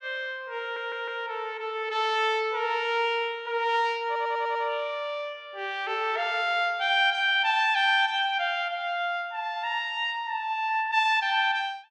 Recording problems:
audio stuttering; at 0.5 s and at 4 s

